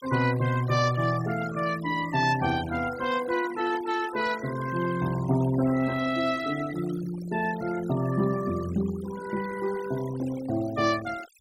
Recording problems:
noise reduction artefacts; signal-to-artefact ratio 14 dB

